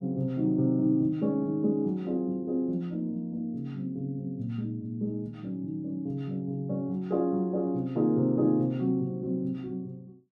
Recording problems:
none

